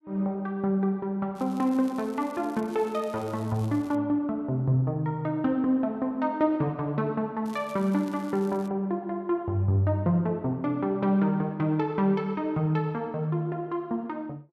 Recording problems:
crackle; from 1.5 to 4 s and from 7.5 to 8.5 s; loose cable, SNR 25 dB

